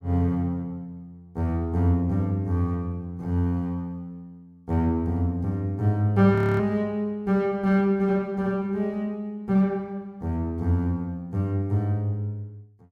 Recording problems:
frozen audio; at 6.5 s

